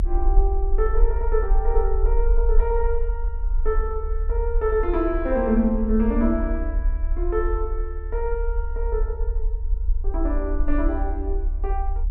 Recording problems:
low-frequency rumble; below 44 Hz, strongest tone 32 Hz, SNR 0 dB

